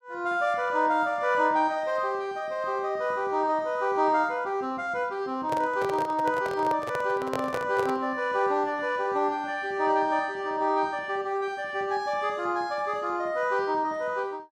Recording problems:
microphone handling noise; from 5.5 to 8 s; peak -1 dB vs average level

